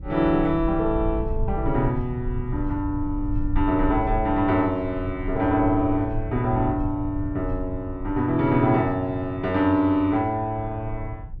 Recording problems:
rumble; below 86 Hz, SNR 9 dB

